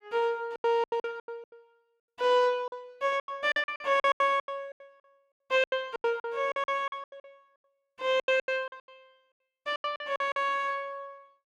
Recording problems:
packet loss; 21% of the sound replaced, filled with silence

